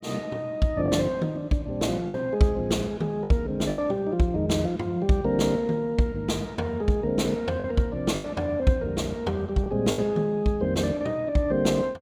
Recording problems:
packet loss; 4% of the sound replaced, filled with the last packet

